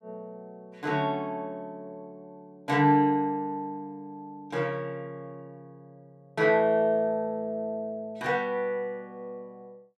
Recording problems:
none

